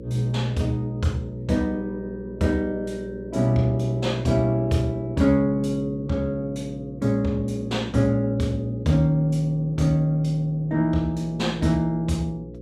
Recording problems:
electrical hum; 60 Hz, harmonics up to 540 Hz, SNR 14 dB

